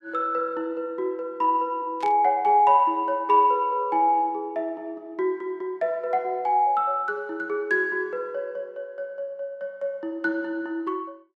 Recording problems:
burst of static; at 2 s; peak -12 dB vs average level

